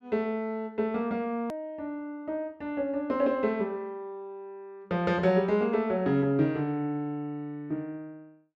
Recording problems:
hard cut with a click; at 1.5 s

